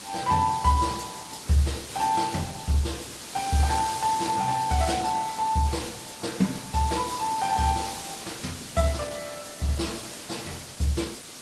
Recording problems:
codec artefacts; AAC, then Opus, log-spectral distance 9 dB, nothing above 15.5 kHz
background hiss; slope -1 dB per octave, SNR 11 dB

